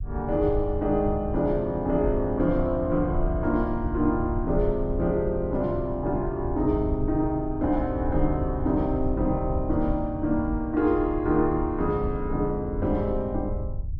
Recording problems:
low-frequency rumble; below 84 Hz, SNR 8 dB

